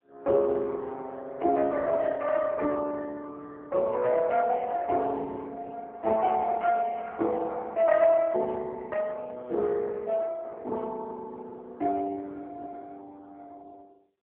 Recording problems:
phone line; 280 Hz to 3.3 kHz, AMR-NB

